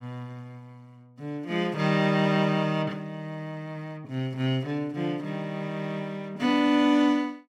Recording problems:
none

